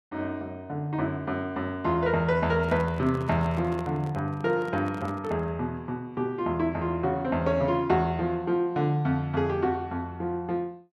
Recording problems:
handling noise; from 2.5 to 5.5 s; peak -8 dB vs average level

